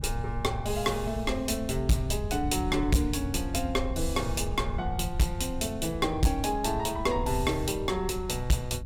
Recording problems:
distorted audio; hard clipping, signal-to-distortion ratio 11 dB
wind noise; below 90 Hz, SNR 7 dB

